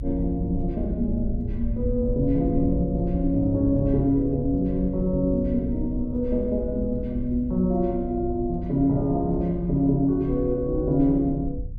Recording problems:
low-frequency rumble; below 70 Hz, SNR 9 dB

